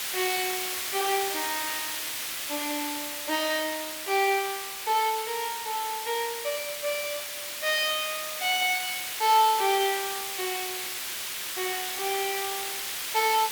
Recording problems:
hiss; SNR 3 dB

